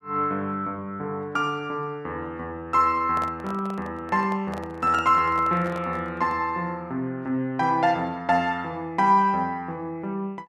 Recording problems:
handling noise; from 3 to 6.5 s; peak -7 dB vs average level

